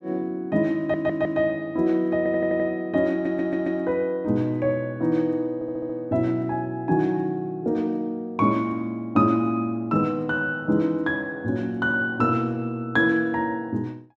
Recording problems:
audio stuttering; 4 times, first at 1 s

